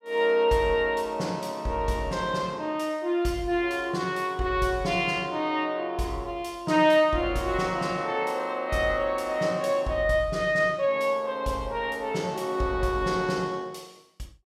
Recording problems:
none

